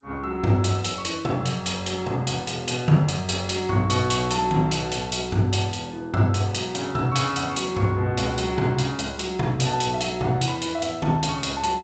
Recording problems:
lossy compression; G.722, log-spectral distance 4 dB, nothing above 7.8 kHz

